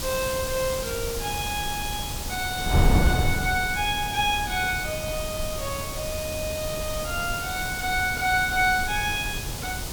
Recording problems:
hiss; SNR 6 dB
wind on the microphone; below 190 Hz, SNR 5 dB

